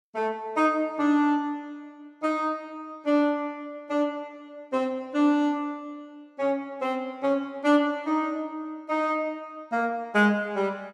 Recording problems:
none

